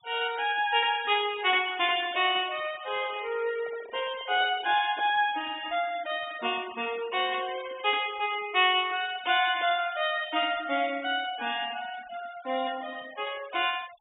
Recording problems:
treble cut off; nothing above 3.7 kHz
denoising artefacts; signal-to-artefact ratio 18 dB
handling noise; from 3.5 to 5 s; peak -13 dB vs average level

